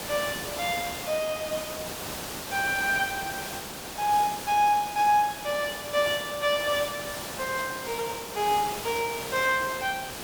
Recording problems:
hiss; slope -3 dB per octave, SNR 8 dB

